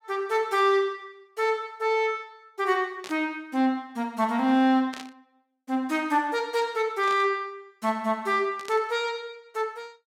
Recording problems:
static burst; 4 times, first at 3 s; peak -9 dB vs average level

